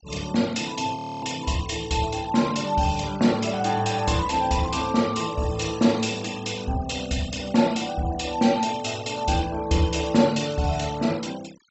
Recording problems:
treble missing; nothing above 7.7 kHz
noise reduction artefacts; signal-to-artefact ratio 18 dB
frozen audio; at 1 s

